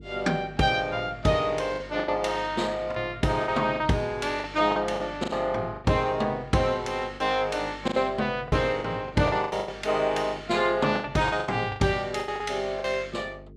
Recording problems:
hum; 50 Hz, harmonics up to 450 Hz, SNR 20 dB
packet loss; 10% of the sound replaced, filled with the last packet

